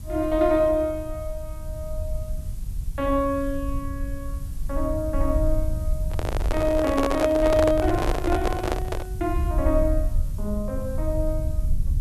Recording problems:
hiss; slope -1 dB per octave, SNR 24 dB
low-frequency rumble; below 74 Hz, SNR 5 dB
handling noise; from 6 to 9 s; peak +3 dB vs average level

